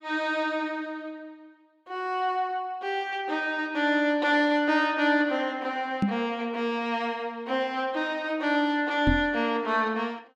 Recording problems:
microphone thump; at 6 s and at 9 s; peak +5 dB vs average level

